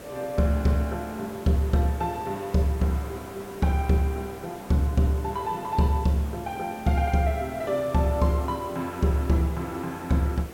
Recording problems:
background hiss; slope -6 dB per octave, SNR 16 dB

